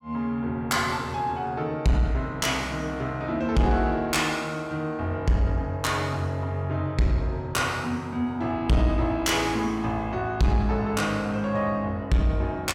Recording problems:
distorted audio; soft clipping, signal-to-distortion ratio 12 dB

